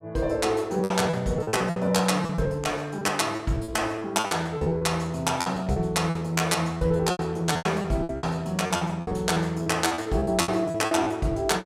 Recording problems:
packet loss; 18% of the sound replaced, filled with repeated pitch periods

